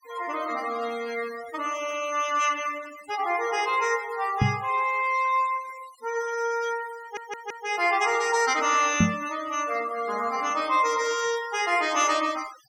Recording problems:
noise reduction artefacts; signal-to-artefact ratio 17 dB
knock on the microphone; at 4.5 s and at 9 s; peak +8 dB vs average level
audio stuttering; at 7 s

